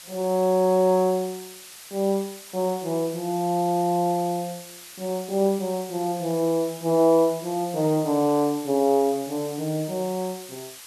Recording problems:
hiss; slope +2 dB per octave, SNR 16 dB

